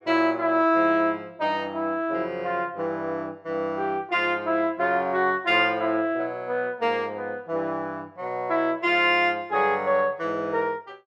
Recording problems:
none

